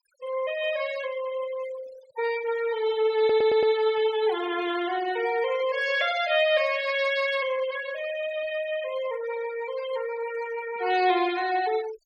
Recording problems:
noise reduction artefacts; signal-to-artefact ratio 16 dB
stutter; at 3 s

